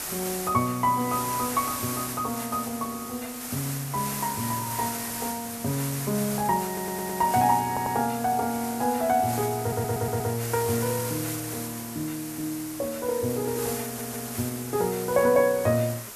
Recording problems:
background hiss; slope -1 dB per octave, SNR 6 dB
audio stuttering; 4 times, first at 6.5 s

